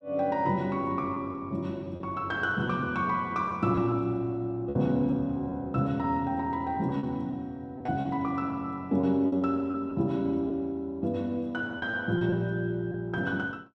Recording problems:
lost packets; 5% of the sound replaced, filled with repeated pitch periods

